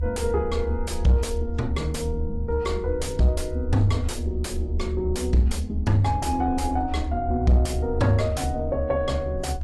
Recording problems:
lossy compression; AAC, log-spectral distance 2 dB, nothing above 11.6 kHz
distorted audio; soft clipping, signal-to-distortion ratio 11 dB
low-frequency rumble; below 76 Hz, strongest tone 70 Hz, SNR 5 dB

